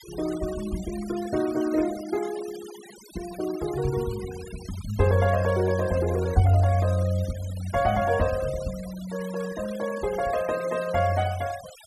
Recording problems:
noise reduction artefacts; signal-to-artefact ratio 17 dB

